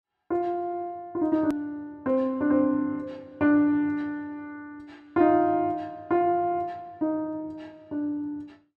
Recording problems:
hard cut with a click; at 1.5 s

